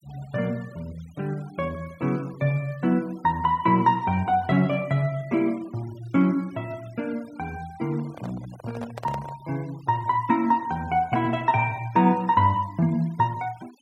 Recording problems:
denoising artefacts; signal-to-artefact ratio 25 dB
handling noise; from 8 to 9.5 s; peak -7 dB vs average level

